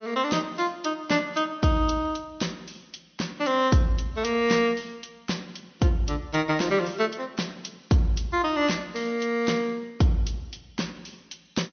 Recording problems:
treble cut off; nothing above 6.2 kHz
lossy compression; MP3, log-spectral distance 5 dB

